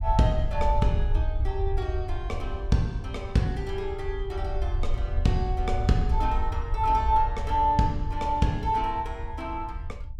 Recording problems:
rumble; below 70 Hz, SNR 4 dB

